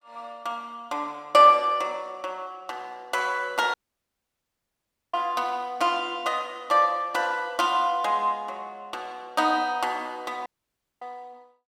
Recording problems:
audio cutting out; at 3.5 s for 1.5 s and at 10 s for 0.5 s

